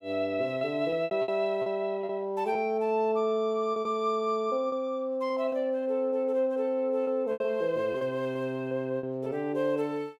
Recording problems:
lost packets; 8% of the sound replaced, filled with repeated pitch periods

